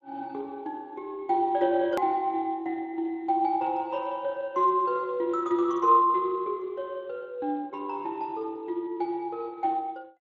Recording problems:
codec artefacts; Speex, log-spectral distance 2 dB, nothing above 14.1 kHz
click at an edit; at 2 s

